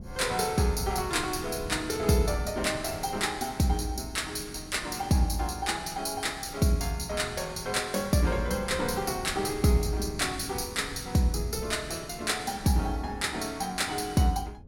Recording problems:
wind on the microphone; below 200 Hz, SNR 15 dB

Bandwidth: 17.5 kHz